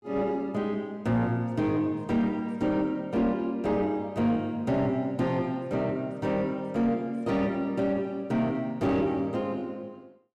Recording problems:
distorted audio; soft clipping, signal-to-distortion ratio 11 dB

